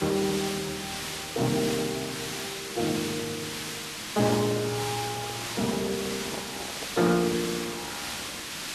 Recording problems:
codec artefacts; Speex, log-spectral distance 3 dB
background hiss; slope 0 dB per octave, SNR 4 dB
handling noise; from 5 to 7 s; peak -3 dB vs average level

